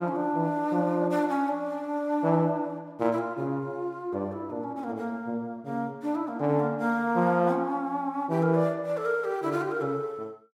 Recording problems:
none

